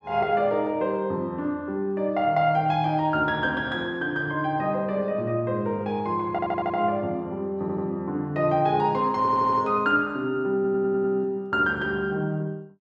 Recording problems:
stutter; 4 times, first at 6.5 s

